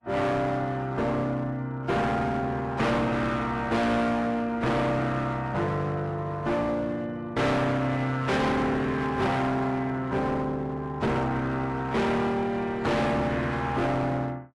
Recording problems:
codec artefacts; AAC, log-spectral distance 2 dB, nothing above 11.3 kHz
distortion; hard clipping, uneven, signal-to-distortion ratio 5 dB

